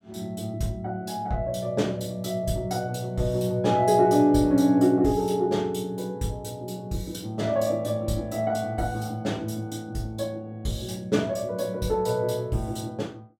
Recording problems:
none

